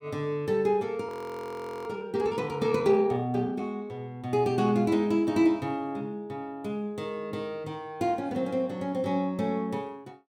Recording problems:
frozen audio; at 1 s for 1 s

